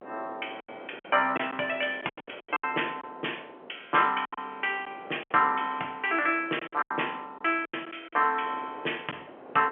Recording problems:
phone line; 320 Hz to 3.2 kHz, G.711
wind noise; below 790 Hz, SNR 20 dB
lost packets; 10% of the sound replaced, filled with silence

